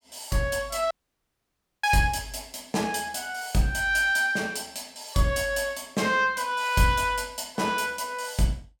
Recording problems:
dropout; at 1 s for 1 s

